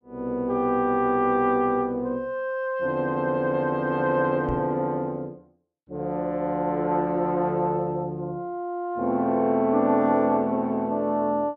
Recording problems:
microphone thump; at 4.5 s; peak -4 dB vs average level

